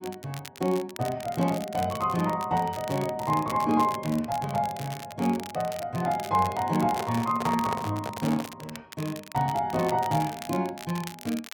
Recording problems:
crackle; vinyl, SNR 15 dB
microphone handling noise; from 7 to 8.5 s; peak 0 dB vs average level

